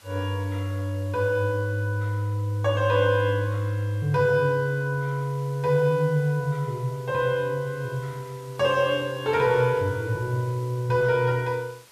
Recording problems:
hiss; slope 0 dB per octave, SNR 26 dB

